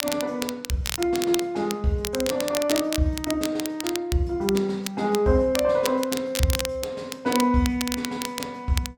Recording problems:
crackling; vinyl, SNR 7 dB

